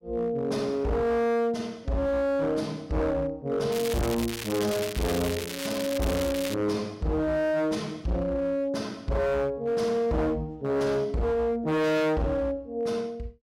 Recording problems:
distortion; hard clipping, signal-to-distortion ratio 7 dB
crackling; from 3.5 to 6.5 s; loose cable, SNR 8 dB

